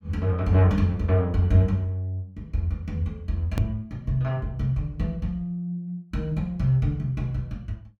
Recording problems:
edit click; at 3.5 s

